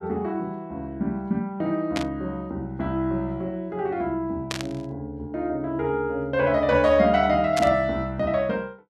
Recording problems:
burst of static; at 2 s, at 4.5 s and at 7.5 s; peak 0 dB vs average level

